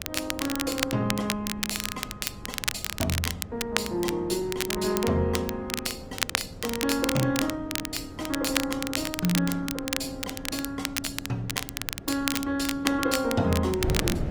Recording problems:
codec artefacts; Opus, log-spectral distance 3 dB, nothing above 19 kHz
electrical hum; 50 Hz, harmonics up to 1.2 kHz, SNR 23 dB
wind noise; below 330 Hz, SNR 12 dB
crackle; vinyl, SNR 3 dB

